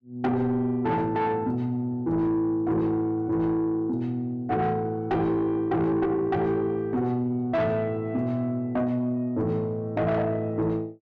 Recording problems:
distortion; soft clipping, signal-to-distortion ratio 11 dB

